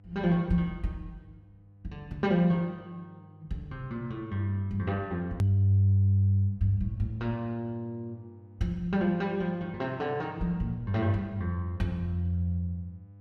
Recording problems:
hum; 50 Hz, harmonics up to 500 Hz, SNR 23 dB
hard cut with a click; at 5.5 s

